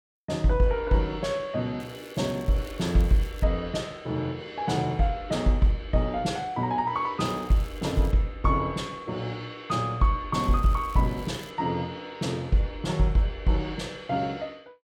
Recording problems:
crackling; from 2 to 3.5 s, at 7.5 s and from 10 to 12 s; loose cable, SNR 24 dB

